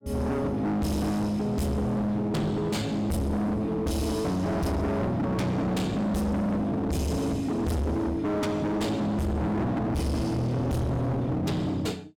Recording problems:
distorted audio; hard clipping, signal-to-distortion ratio 6 dB

